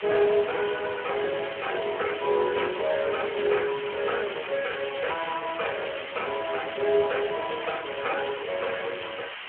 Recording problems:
phone line; 340 Hz to 3.2 kHz, Speex
hiss; SNR 8 dB

